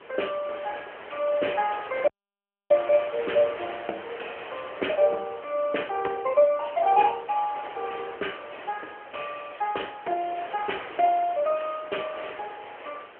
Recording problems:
phone line; 320 Hz to 3.2 kHz, AMR-NB
wind noise; below 2.2 kHz, SNR 13 dB
dropout; at 2 s for 0.5 s

